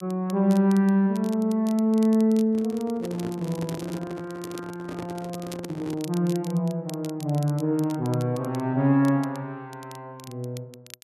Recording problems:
crackling; vinyl, SNR 22 dB
microphone handling noise; from 2.5 to 6 s; peak -7 dB vs average level

